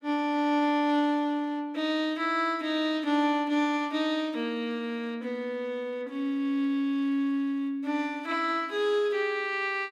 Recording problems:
none

